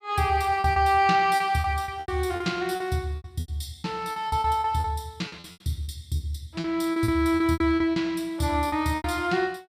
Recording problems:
lost packets; 15% of the sound replaced, filled with repeated pitch periods

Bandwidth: 15 kHz